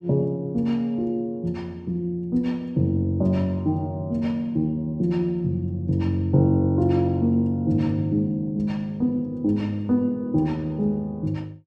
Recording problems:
none

